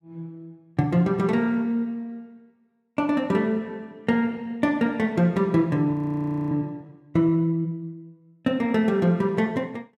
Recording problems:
frozen audio; at 6 s for 0.5 s

